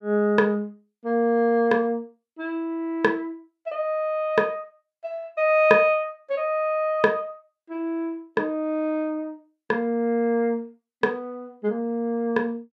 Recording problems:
none

